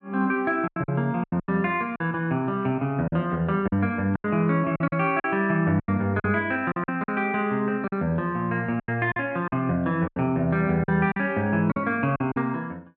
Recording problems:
lost packets; 10% of the sound replaced, filled with silence

